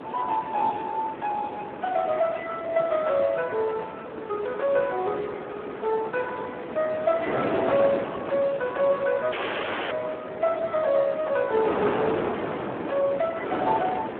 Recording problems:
phone line; 240 Hz to 3.3 kHz, Speex
wind noise; below 970 Hz, SNR 6 dB
dropout; at 9.5 s for 0.5 s

